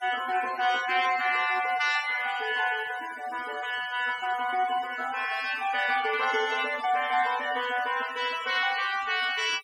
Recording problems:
noise reduction artefacts; signal-to-artefact ratio 15 dB

